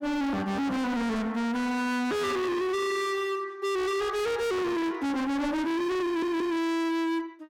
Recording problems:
distorted audio; hard clipping, signal-to-distortion ratio 6 dB
stutter; at 6 s

